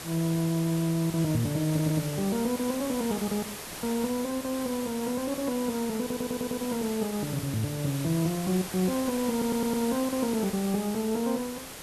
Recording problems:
background hiss; slope -2 dB per octave, SNR 9 dB
stutter; at 1.5 s, at 6 s and at 9.5 s

